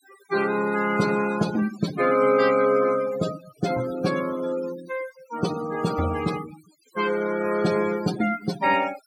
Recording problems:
noise reduction artefacts; signal-to-artefact ratio 13 dB

